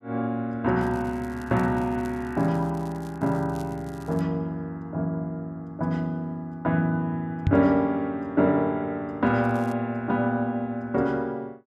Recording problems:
crackling; from 1 to 4 s and at 9.5 s; loose cable, SNR 27 dB
knock on the microphone; at 7.5 s; peak +6 dB vs average level

